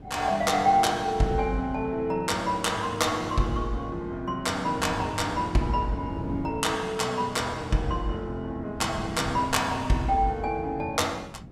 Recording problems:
wind on the microphone; below 250 Hz, SNR 15 dB

